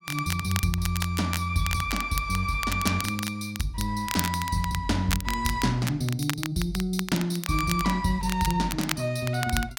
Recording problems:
crackle; vinyl, SNR 8 dB

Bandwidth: 16.5 kHz